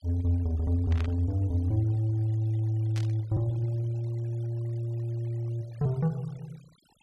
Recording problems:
noise reduction artefacts; signal-to-artefact ratio 28 dB
static burst; at 1 s and at 3 s; peak -9 dB vs average level

